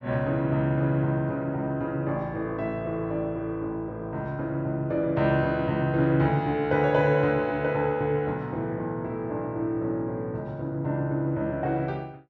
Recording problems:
none

